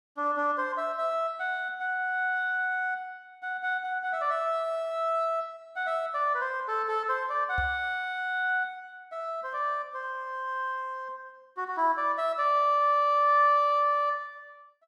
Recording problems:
knock on the microphone; at 7.5 s; peak -4 dB vs average level

